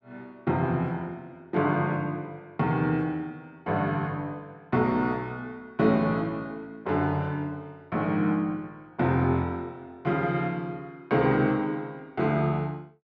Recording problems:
none

